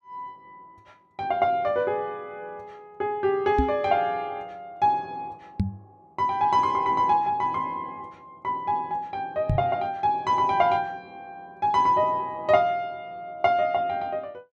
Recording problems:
microphone thump; at 3.5 s, at 5.5 s and at 9.5 s; peak +4 dB vs average level

